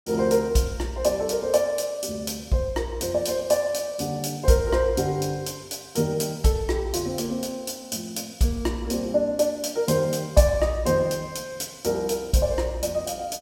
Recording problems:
none

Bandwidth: 16.5 kHz